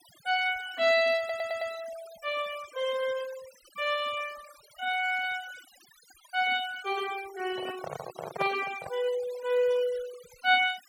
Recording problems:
denoising artefacts; signal-to-artefact ratio 17 dB
stutter; at 1 s
handling noise; from 7.5 to 9 s; peak +1 dB vs average level

